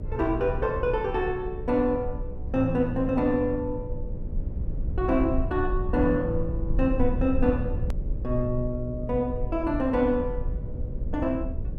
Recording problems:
hum; 60 Hz, harmonics up to 600 Hz, SNR 17 dB
rumble; below 80 Hz, SNR 6 dB
edit click; at 8 s

